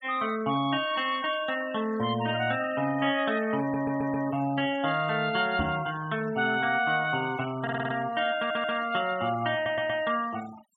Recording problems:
denoising artefacts; signal-to-artefact ratio 19 dB
audio stuttering; 4 times, first at 3.5 s
knock on the microphone; at 5.5 s; peak 0 dB vs average level

